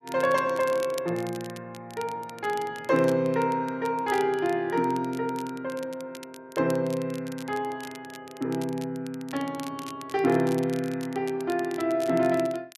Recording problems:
crackle; vinyl, SNR 19 dB

